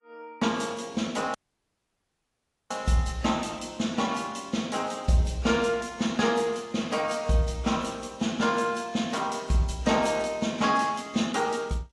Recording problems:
lossy codec; AAC, log-spectral distance 3 dB, nothing above 11.3 kHz
dropout; at 1.5 s for 1.5 s

